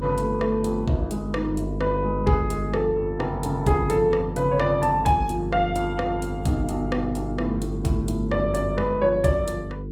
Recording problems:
lossy codec; Opus, log-spectral distance 2 dB, nothing above 19 kHz
mains hum; 50 Hz, harmonics up to 450 Hz, SNR 6 dB

